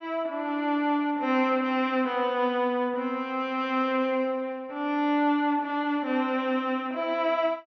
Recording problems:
low-pass filter; nothing above 6.5 kHz

